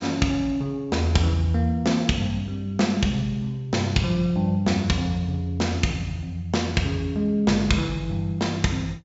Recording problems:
treble missing; nothing above 8 kHz

